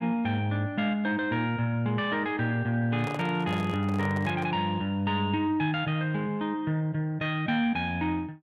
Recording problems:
microphone handling noise; from 3 to 4.5 s; peak -6 dB vs average level

